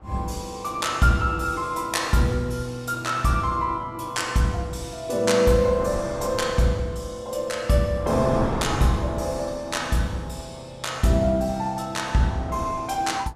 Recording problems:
wind on the microphone; below 830 Hz, SNR 10 dB

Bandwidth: 14.5 kHz